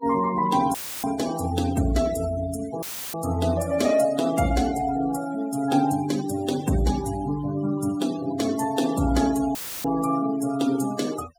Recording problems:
noise reduction artefacts; signal-to-artefact ratio 14 dB
dropout; at 0.5 s, at 3 s and at 9.5 s; filled with static

